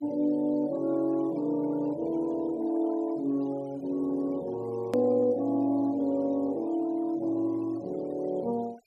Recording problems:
noise reduction artefacts; signal-to-artefact ratio 27 dB
click at an edit; at 5 s

